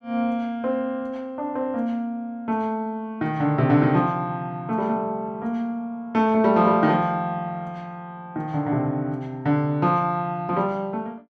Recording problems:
none

